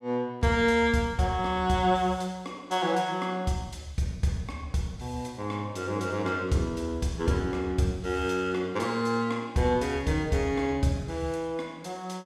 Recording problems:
none

